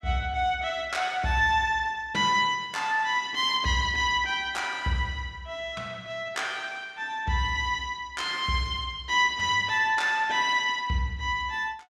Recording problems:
none

